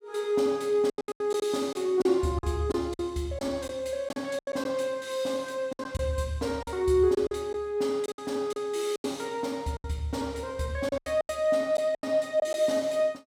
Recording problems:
lost packets; 10% of the sound replaced, filled with silence

